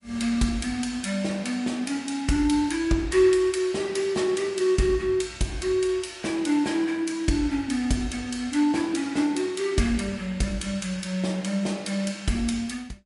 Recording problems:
lossy codec; MP3, log-spectral distance 3 dB, nothing above 11 kHz

